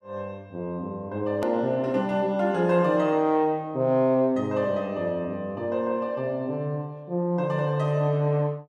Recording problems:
hard cut with a click; at 1.5 s

